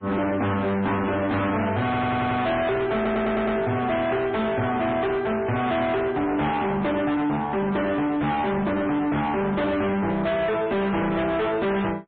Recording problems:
low-pass filter; nothing above 3.7 kHz
lossy codec; MP3, log-spectral distance 3 dB
distortion; hard clipping, signal-to-distortion ratio 6 dB
stutter; at 2 s and at 3 s

